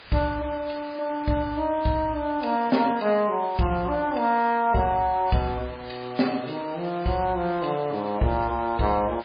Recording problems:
codec artefacts; MP3, log-spectral distance 8 dB, nothing above 4.4 kHz
hiss; SNR 21 dB

